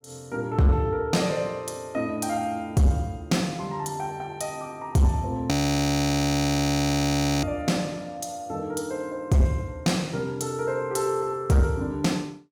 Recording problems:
distorted audio; soft clipping, signal-to-distortion ratio 10 dB
frozen audio; at 5.5 s for 2 s

